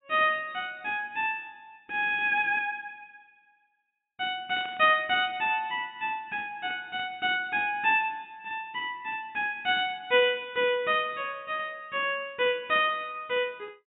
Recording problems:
treble cut off; nothing above 4 kHz
static burst; at 4.5 s; peak -13 dB vs average level

